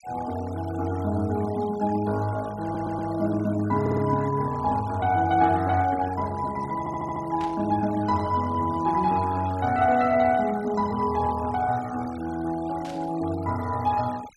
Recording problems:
denoising artefacts; signal-to-artefact ratio 20 dB
audio stuttering; at 2.5 s, at 4 s and at 7 s
burst of static; at 7.5 s and at 13 s; peak -12 dB vs average level

